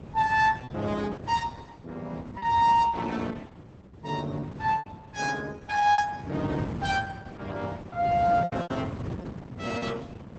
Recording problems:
lossy compression; Opus, log-spectral distance 4 dB, nothing above 7.8 kHz
wind noise; below 330 Hz, SNR 12 dB
packet loss; 6% of the sound replaced, filled with repeated pitch periods

